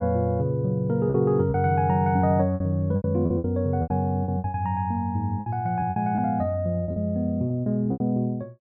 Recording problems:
lost packets; 11% of the sound replaced, filled with repeated pitch periods

